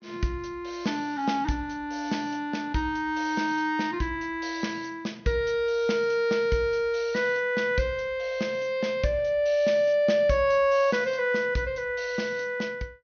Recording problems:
treble missing; nothing above 6.4 kHz

